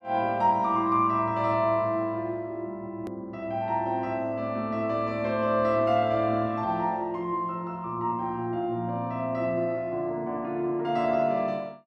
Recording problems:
hard cut with a click; at 3 s

